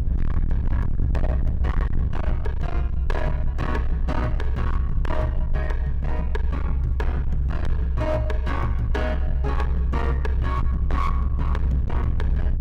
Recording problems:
distorted audio; hard clipping, signal-to-distortion ratio 6 dB
low-frequency rumble; below 66 Hz, SNR -5 dB

